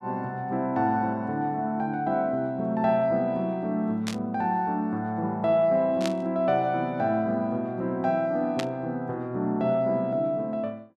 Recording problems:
burst of static; at 4 s, at 6 s and at 8.5 s; peak -2 dB vs average level

